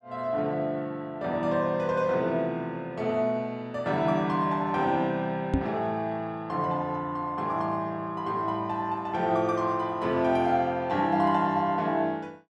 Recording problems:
knock on the microphone; at 5.5 s; peak +5 dB vs average level

